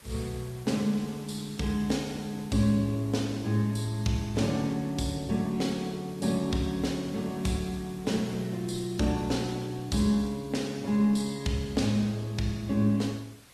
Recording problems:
lossy compression; Opus, then Vorbis, log-spectral distance 4 dB, nothing above 12.7 kHz
hiss; slope -1 dB per octave, SNR 24 dB

